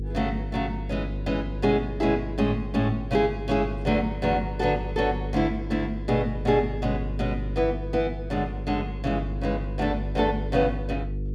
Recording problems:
electrical hum; 50 Hz, harmonics up to 500 Hz, SNR 6 dB

